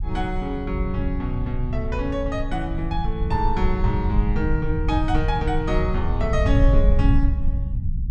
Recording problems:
low-frequency rumble; below 84 Hz, SNR -1 dB

